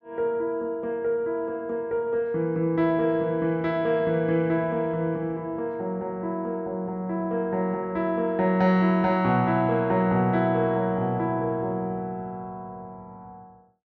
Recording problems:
treble cut off; nothing above 7 kHz

